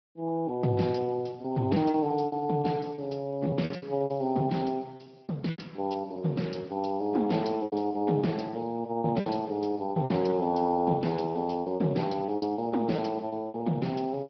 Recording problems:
treble cut off; nothing above 5.5 kHz
codec artefacts; Speex, log-spectral distance 4 dB
lost packets; 13% of the sound replaced, filled with repeated pitch periods

